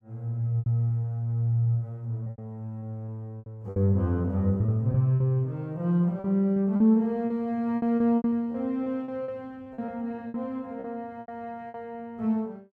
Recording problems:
packet loss; 11% of the sound replaced, filled with repeated pitch periods

